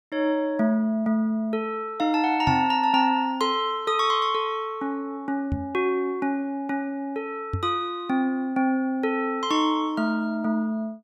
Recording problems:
microphone bump; at 2.5 s, at 5.5 s and at 7.5 s; peak +1 dB vs average level

